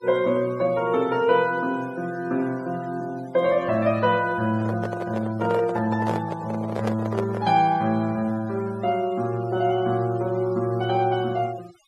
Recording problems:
noise reduction artefacts; signal-to-artefact ratio 22 dB
handling noise; from 4.5 to 7.5 s; peak 0 dB vs average level

